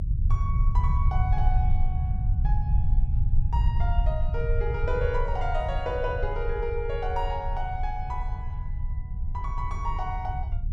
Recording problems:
low-frequency rumble; below 80 Hz, SNR -5 dB

